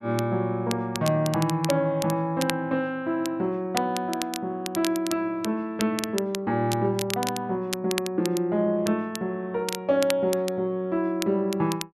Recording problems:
crackle; vinyl, SNR 10 dB

